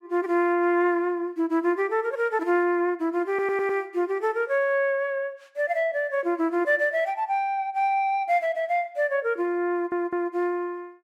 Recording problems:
audio stuttering; at 3.5 s and at 9.5 s

